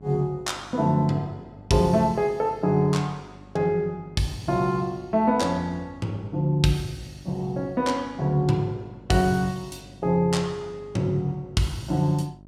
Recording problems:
electrical hum; 50 Hz, harmonics up to 950 Hz, SNR 23 dB

